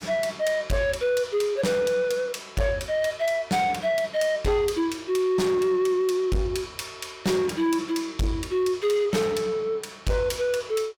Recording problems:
distortion; soft clipping, signal-to-distortion ratio 11 dB

